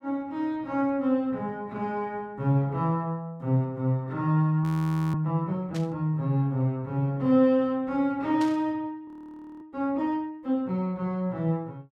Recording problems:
audio freezing; at 4.5 s for 0.5 s and at 9 s for 0.5 s
burst of static; at 6 s and at 8.5 s; peak -9 dB vs average level

